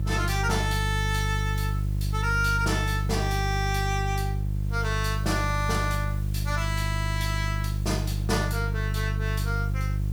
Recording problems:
hum; 50 Hz, harmonics up to 350 Hz, SNR -1 dB
background hiss; slope -1 dB per octave, SNR 21 dB

